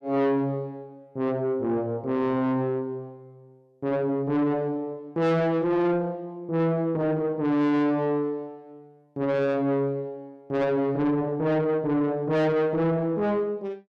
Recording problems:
distorted audio; soft clipping, signal-to-distortion ratio 8 dB

